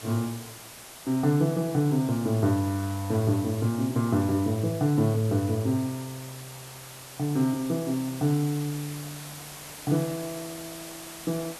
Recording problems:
hiss; slope -2 dB per octave, SNR 15 dB

